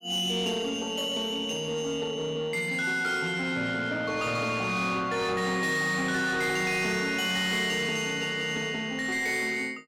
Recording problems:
distorted audio; soft clipping, signal-to-distortion ratio 11 dB

